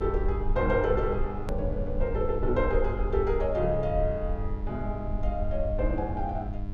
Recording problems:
electrical hum; 50 Hz, harmonics up to 1 kHz, SNR 9 dB
low-frequency rumble; below 56 Hz, SNR 4 dB
hard cut with a click; at 1.5 s

